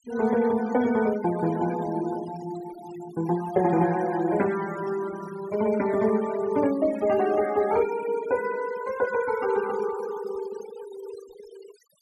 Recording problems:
denoising artefacts; signal-to-artefact ratio 18 dB

